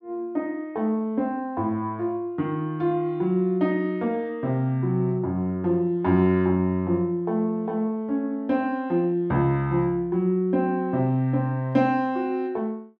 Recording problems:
none

